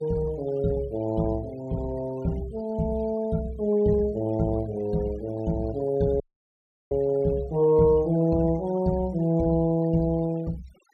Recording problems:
denoising artefacts; signal-to-artefact ratio 23 dB
dropout; at 6 s for 0.5 s

